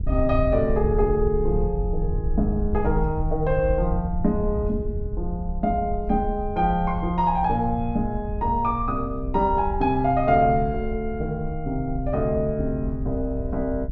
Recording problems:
treble cut off; nothing above 7.1 kHz
wind on the microphone; below 72 Hz, SNR 6 dB

